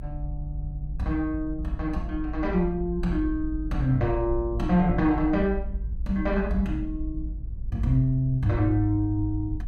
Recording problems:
low-frequency rumble; below 58 Hz, strongest tone 50 Hz, SNR 8 dB

